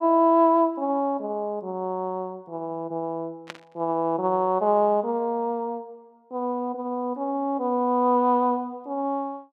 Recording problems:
burst of static; at 3.5 s; peak -7 dB vs average level

